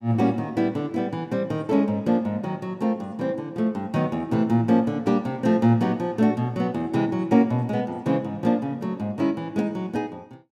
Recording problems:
none

